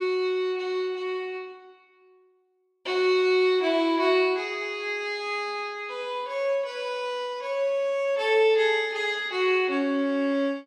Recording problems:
none

